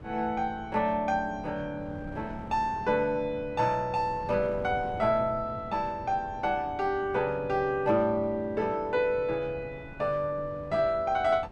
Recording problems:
wind on the microphone; below 350 Hz, SNR 17 dB

